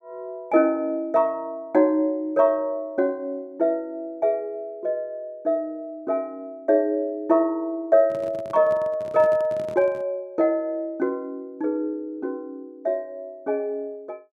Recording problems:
handling noise; from 8 to 10 s; peak -11 dB vs average level

